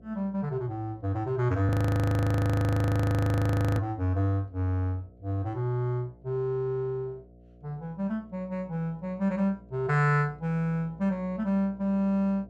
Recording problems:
electrical hum; 60 Hz, harmonics up to 720 Hz, SNR 25 dB
audio freezing; at 1.5 s for 2 s

